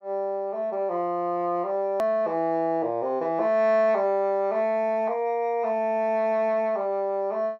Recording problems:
low-pass filter; nothing above 8 kHz
click at an edit; at 2 s

